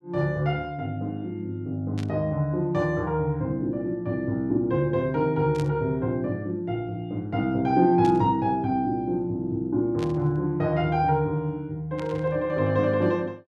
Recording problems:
static burst; 5 times, first at 2 s; peak -10 dB vs average level

